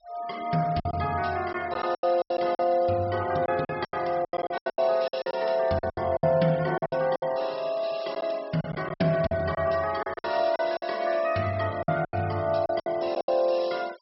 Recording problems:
treble cut off; nothing above 5.5 kHz
denoising artefacts; signal-to-artefact ratio 22 dB
packet loss; 13% of the sound replaced, filled with silence

